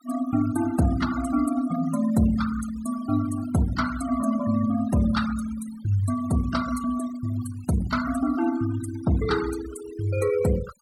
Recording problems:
noise reduction artefacts; signal-to-artefact ratio 14 dB

